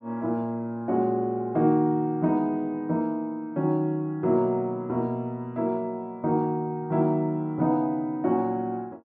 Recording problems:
none

